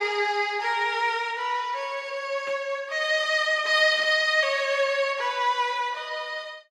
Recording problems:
burst of static; at 2.5 s and at 4 s; peak -15 dB vs average level

